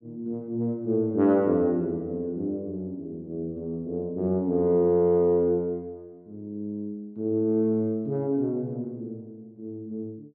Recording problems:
none

